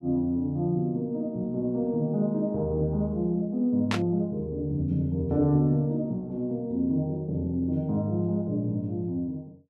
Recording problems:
static burst; at 4 s; peak +1 dB vs average level

